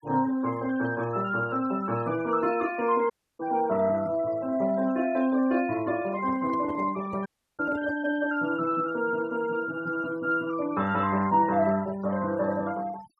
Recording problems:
noise reduction artefacts; signal-to-artefact ratio 21 dB
dropout; at 3 s and at 7.5 s
microphone handling noise; from 6 to 8 s; peak -8 dB vs average level

